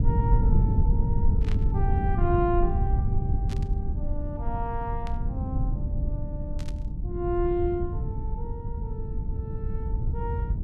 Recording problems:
low-frequency rumble; below 110 Hz, SNR -5 dB
burst of static; 4 times, first at 1.5 s; peak -6 dB vs average level

